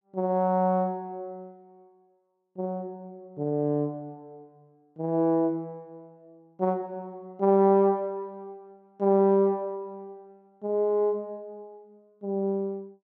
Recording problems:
none

